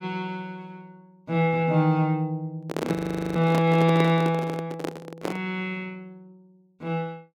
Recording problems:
microphone handling noise; from 2.5 to 5.5 s; peak 0 dB vs average level
frozen audio; at 3 s

